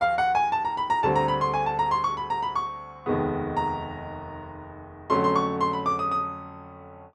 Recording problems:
none

